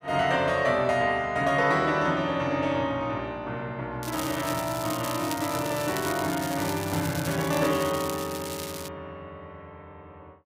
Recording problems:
crackling; from 4 to 9 s; loose cable, SNR 10 dB

